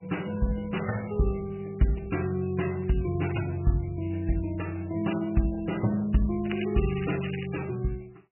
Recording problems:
lossy compression; MP3, log-spectral distance 7 dB, nothing above 2.9 kHz
crackling; from 6.5 to 7.5 s; loose cable, SNR 13 dB

